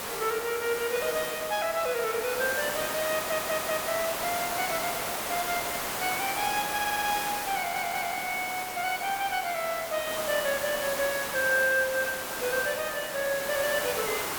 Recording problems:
hiss; SNR 3 dB
stutter; at 3 s, at 6.5 s and at 7.5 s

